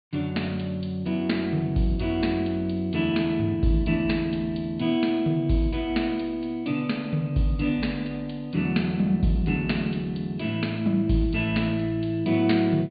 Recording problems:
treble missing; nothing above 4.7 kHz

